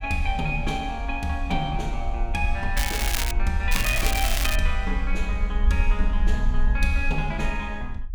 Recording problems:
rumble; below 50 Hz, SNR 1 dB
crackle; at 3 s and at 3.5 s; loose cable, SNR 1 dB

